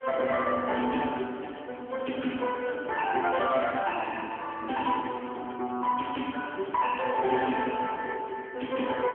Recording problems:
telephone audio; 190 Hz to 3.3 kHz, AMR-NB
distorted audio; soft clipping, signal-to-distortion ratio 11 dB

